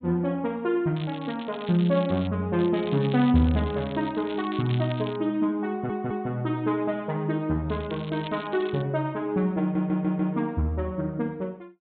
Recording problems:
treble missing; nothing above 4 kHz
crackling; from 1 to 2.5 s, from 2.5 to 5 s and from 7.5 to 9 s; loose cable, SNR 17 dB
audio stuttering; at 5.5 s and at 9.5 s

